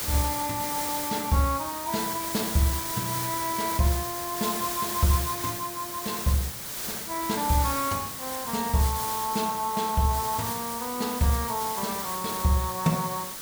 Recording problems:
background hiss; slope -1 dB per octave, SNR 3 dB

